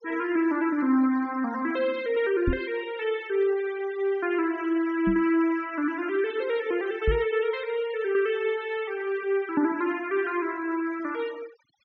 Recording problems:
treble cut off; nothing above 6.4 kHz
denoising artefacts; signal-to-artefact ratio 20 dB
microphone thump; at 2.5 s, at 5 s and at 7 s; peak +4 dB vs average level

